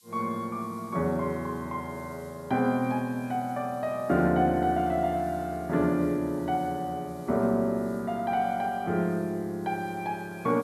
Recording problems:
background hiss; SNR 27 dB

